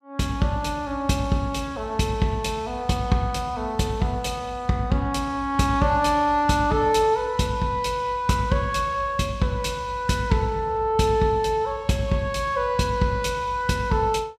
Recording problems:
none

